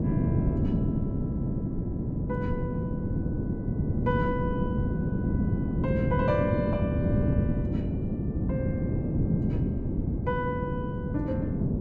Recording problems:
wind noise; below 260 Hz, SNR -6 dB

